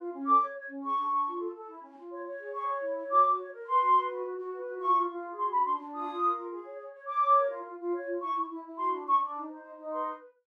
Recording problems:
none

